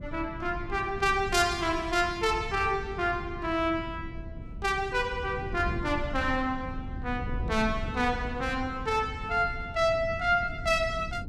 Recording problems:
wind on the microphone; below 140 Hz, SNR 11 dB

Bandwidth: 15 kHz